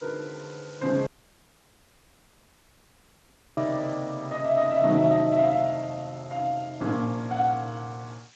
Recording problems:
codec artefacts; Speex, log-spectral distance 8 dB
background hiss; slope +2 dB per octave, SNR 27 dB
dropout; at 1 s for 2.5 s

